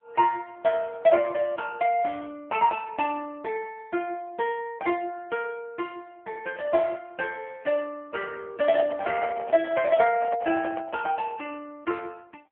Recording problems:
telephone audio; 220 Hz to 2.8 kHz, AMR-NB
microphone handling noise; from 8.5 to 11 s; peak -1 dB vs average level

